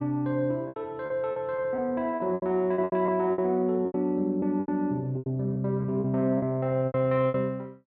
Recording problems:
lost packets; 14% of the sound replaced, filled with repeated pitch periods

